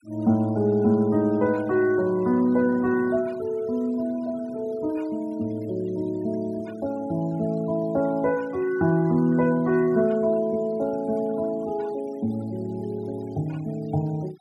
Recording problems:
denoising artefacts; signal-to-artefact ratio 25 dB

